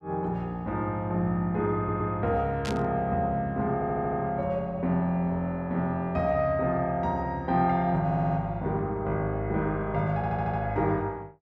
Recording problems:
stutter; 4 times, first at 2 s
static burst; at 2.5 s; peak -5 dB vs average level

